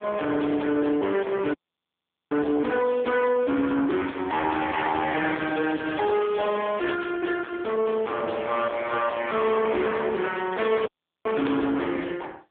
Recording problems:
phone line; 240 Hz to 3.4 kHz, AMR-NB
distortion; soft clipping, signal-to-distortion ratio 7 dB
audio cutting out; at 1.5 s for 1 s and at 11 s
crackle; from 5.5 to 7 s and from 11 to 12 s; loose cable, SNR 16 dB

